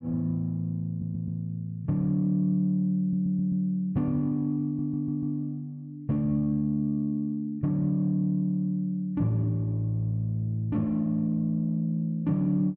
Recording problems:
audio stuttering; at 1 s, at 3 s and at 4.5 s

